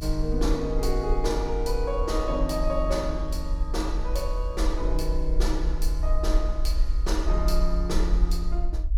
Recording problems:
low-frequency rumble; below 46 Hz, SNR -1 dB

